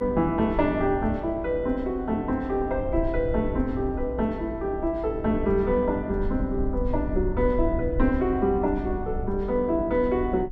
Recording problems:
rumble; below 70 Hz, SNR 9 dB

